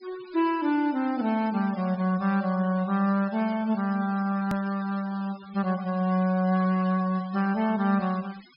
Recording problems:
treble cut off; nothing above 5.5 kHz
denoising artefacts; signal-to-artefact ratio 22 dB
click at an edit; at 4.5 s

